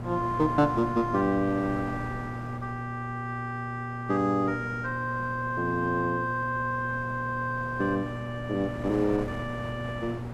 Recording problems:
hum; 60 Hz, harmonics up to 840 Hz, SNR 8 dB
wind on the microphone; below 780 Hz, SNR 13 dB

